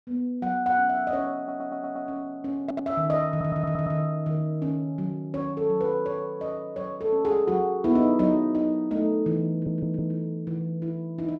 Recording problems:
stutter; 4 times, first at 1.5 s

